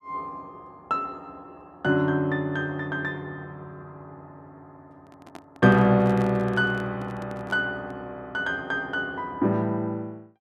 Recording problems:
handling noise; from 5 to 8 s; peak -8 dB vs average level

